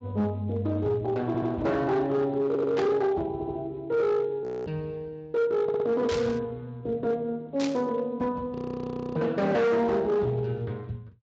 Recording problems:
lossy codec; Speex, log-spectral distance 2 dB, nothing above 7.3 kHz
distorted audio; hard clipping, signal-to-distortion ratio 11 dB
stutter; 4 times, first at 1.5 s
static burst; at 3 s, at 6 s and at 7.5 s; peak -4 dB vs average level
audio freezing; at 4.5 s and at 8.5 s for 0.5 s

